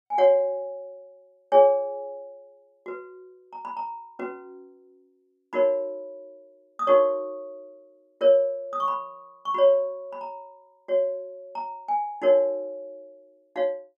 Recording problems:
none

